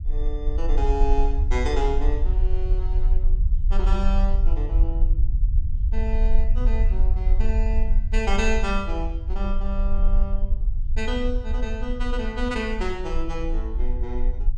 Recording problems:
rumble; below 46 Hz, SNR -5 dB

